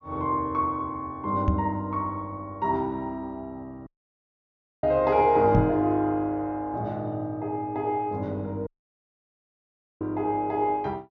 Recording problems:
treble cut off; nothing above 6.7 kHz
knock on the microphone; at 1.5 s and at 5.5 s; peak +6 dB vs average level
dropout; at 4 s for 1 s and at 8.5 s for 1.5 s

